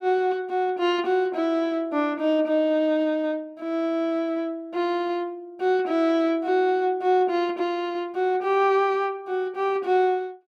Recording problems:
none

